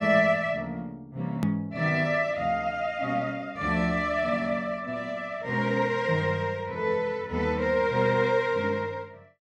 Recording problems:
edit click; at 1.5 s

